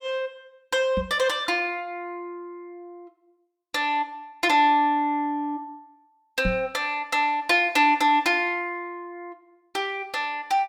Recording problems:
knock on the microphone; at 1 s and at 6.5 s; peak 0 dB vs average level

